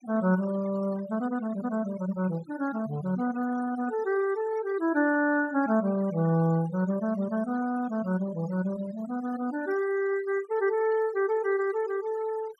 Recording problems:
noise reduction artefacts; signal-to-artefact ratio 17 dB

